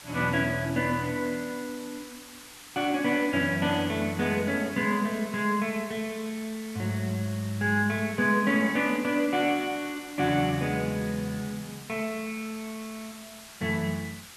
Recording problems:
hiss; slope +1 dB per octave, SNR 16 dB

